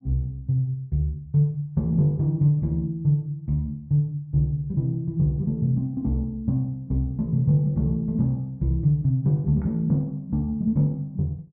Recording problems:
none

